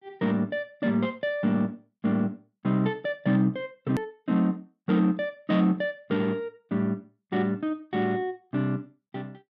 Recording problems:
edit click; at 4 s

